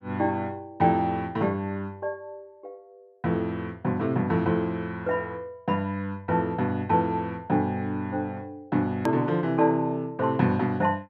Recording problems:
edit click; at 9 s

